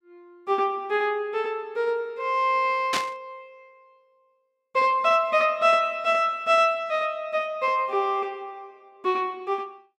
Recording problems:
static burst; at 3 s; peak +1 dB vs average level

